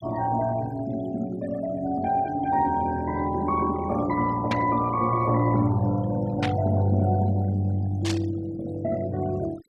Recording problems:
noise reduction artefacts; signal-to-artefact ratio 20 dB
static burst; at 4.5 s, at 6.5 s and at 8 s; peak -1 dB vs average level

